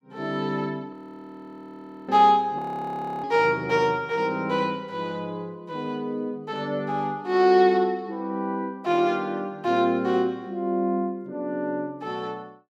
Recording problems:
frozen audio; at 1 s for 1 s and at 2.5 s for 0.5 s

